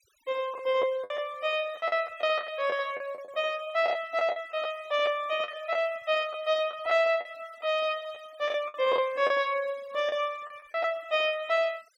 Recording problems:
denoising artefacts; signal-to-artefact ratio 25 dB
lost packets; 8% of the sound replaced, filled with the last packet

